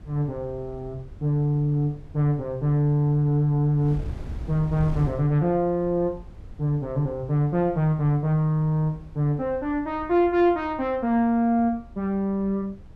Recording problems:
wind noise; below 110 Hz, SNR 17 dB

